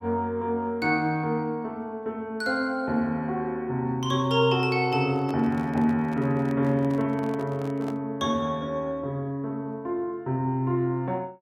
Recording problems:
handling noise; from 5 to 8 s; peak -9 dB vs average level

